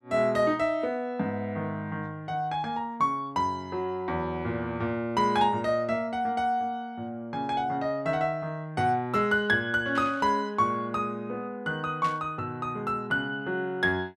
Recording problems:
burst of static; at 10 s and at 12 s; peak -8 dB vs average level

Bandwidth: 12.5 kHz